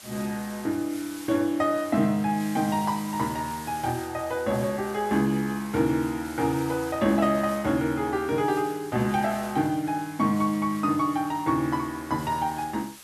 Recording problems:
hiss; slope +1 dB per octave, SNR 17 dB

